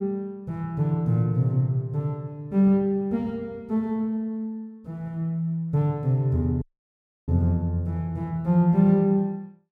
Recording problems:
dropout; at 6.5 s for 0.5 s

